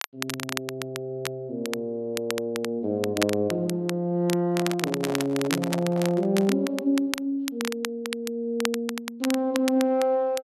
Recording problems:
crackling; vinyl, SNR 8 dB
microphone handling noise; from 4.5 to 6.5 s; peak -4 dB vs average level

